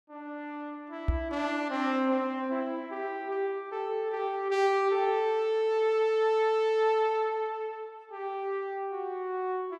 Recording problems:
knock on the microphone; at 1 s; peak +5 dB vs average level

